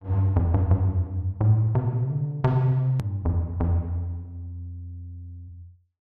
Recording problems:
edit click; at 3 s

